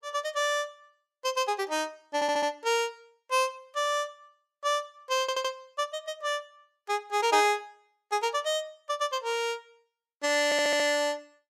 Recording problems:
stutter; at 2 s, at 5 s and at 10 s

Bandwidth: 15.5 kHz